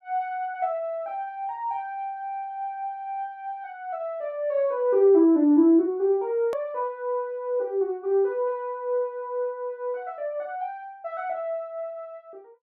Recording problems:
hard cut with a click; at 6.5 s

